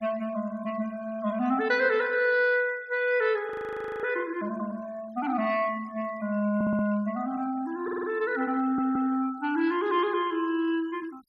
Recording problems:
noise reduction artefacts; signal-to-artefact ratio 24 dB
audio freezing; at 3.5 s for 0.5 s
audio stuttering; at 6.5 s, at 8 s and at 8.5 s

